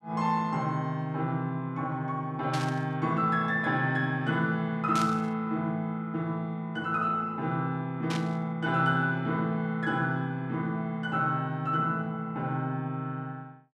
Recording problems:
static burst; at 2.5 s, at 5 s and at 8 s; peak -3 dB vs average level

